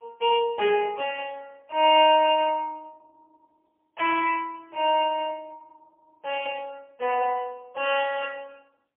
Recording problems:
telephone audio; 340 Hz to 3.3 kHz, AMR-NB, then MP3

